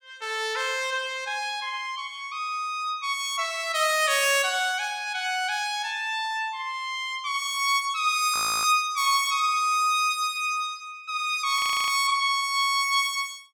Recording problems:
frozen audio; at 8.5 s and at 12 s

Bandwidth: 17 kHz